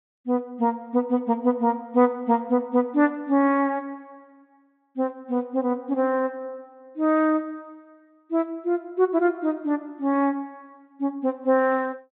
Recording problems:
low-pass filter; nothing above 4 kHz

